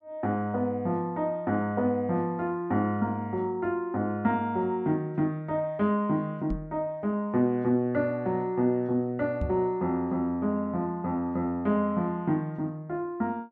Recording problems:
microphone bump; at 6.5 s and at 9.5 s; peak +1 dB vs average level

